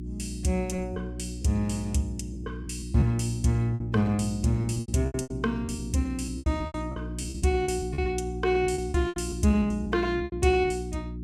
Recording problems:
electrical hum; 60 Hz, harmonics up to 360 Hz, SNR 8 dB
lost packets; 13% of the sound replaced, filled with repeated pitch periods

